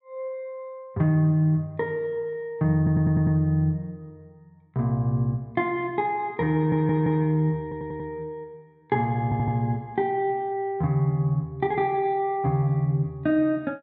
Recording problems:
stutter; 4 times, first at 3 s

